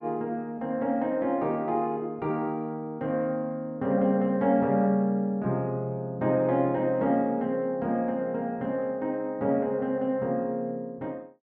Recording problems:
none

